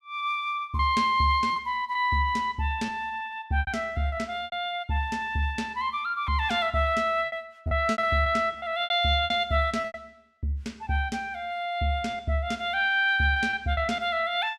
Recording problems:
lost packets; 8% of the sound replaced, filled with repeated pitch periods

